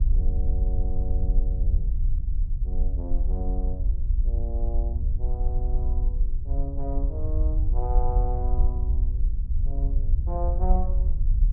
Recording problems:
low-pass filter; nothing above 5.5 kHz
low-frequency rumble; below 56 Hz, SNR -11 dB

